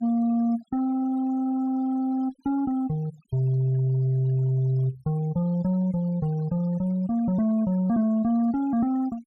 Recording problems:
denoising artefacts; signal-to-artefact ratio 25 dB

